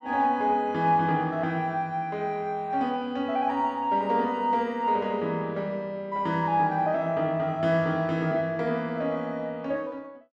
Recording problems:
none

